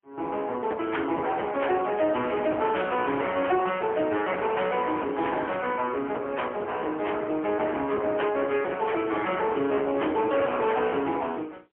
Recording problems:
phone line; 260 Hz to 3.2 kHz, AMR-NB, then MP3
distortion; soft clipping, signal-to-distortion ratio 12 dB

